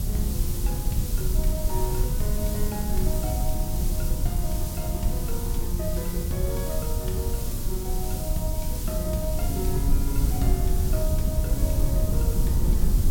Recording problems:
hiss; slope +2 dB per octave, SNR 3 dB
low-frequency rumble; below 110 Hz, SNR 14 dB
wind on the microphone; below 80 Hz, SNR -5 dB

